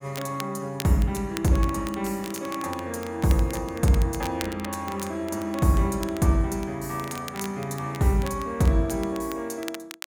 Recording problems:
crackling; vinyl, SNR 15 dB

